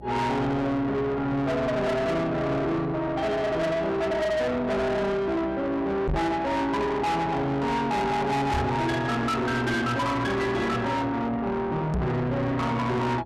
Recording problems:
distortion; soft clipping, signal-to-distortion ratio 6 dB
hum; 60 Hz, harmonics up to 720 Hz, SNR 22 dB
microphone thump; at 6 s, at 8.5 s and at 12 s; peak +6 dB vs average level

